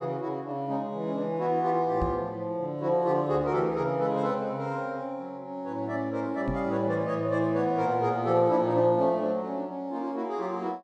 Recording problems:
microphone bump; at 2 s and at 6.5 s; peak -1 dB vs average level

